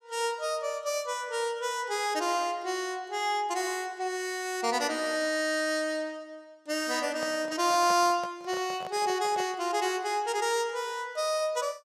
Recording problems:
microphone handling noise; from 7 to 9.5 s; peak -6 dB vs average level

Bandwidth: 14.5 kHz